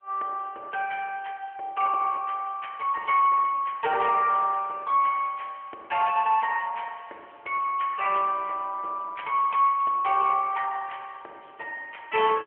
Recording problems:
phone line; 340 Hz to 3.1 kHz, AMR-NB

